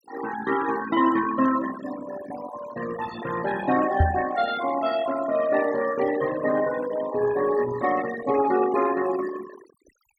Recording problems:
denoising artefacts; signal-to-artefact ratio 12 dB
knock on the microphone; at 4 s; peak +7 dB vs average level

